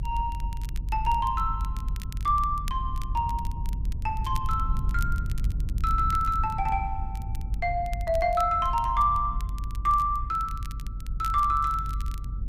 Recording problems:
rumble; below 76 Hz, SNR 5 dB
crackling; vinyl, SNR 22 dB

